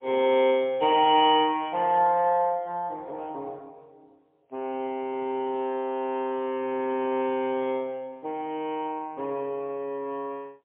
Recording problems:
telephone audio; 280 Hz to 3.4 kHz, AMR-NB, then MP3

